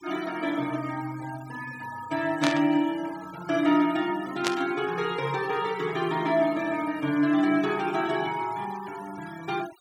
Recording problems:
noise reduction artefacts; signal-to-artefact ratio 17 dB
static burst; at 2.5 s and at 4.5 s; peak +4 dB vs average level

